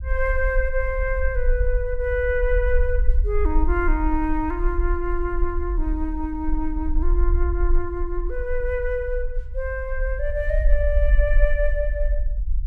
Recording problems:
rumble; below 48 Hz, SNR 0 dB

